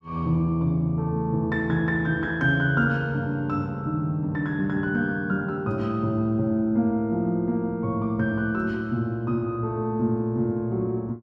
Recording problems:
none

